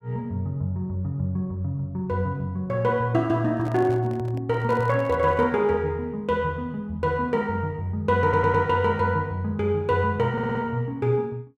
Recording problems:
microphone handling noise; from 3.5 to 5.5 s; peak -10 dB vs average level
audio stuttering; at 8 s and at 10 s

